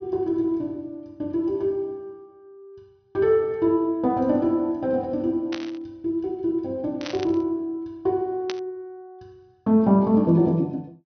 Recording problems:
low-pass filter; nothing above 6.1 kHz
burst of static; at 5.5 s, at 7 s and at 8.5 s; peak -5 dB vs average level

